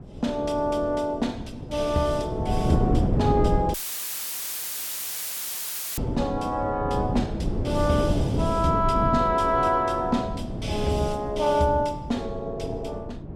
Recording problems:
wind noise; below 300 Hz, SNR 3 dB
dropout; at 3.5 s for 2 s; filled with static

